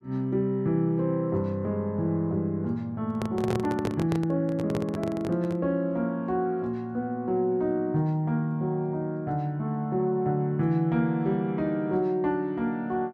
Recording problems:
microphone handling noise; from 3 to 5.5 s; peak +1 dB vs average level

